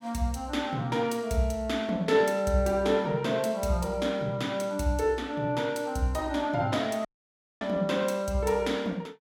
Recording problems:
dropout; at 7 s for 0.5 s

